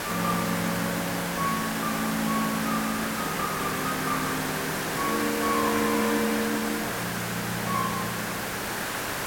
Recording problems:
hiss; SNR 0 dB

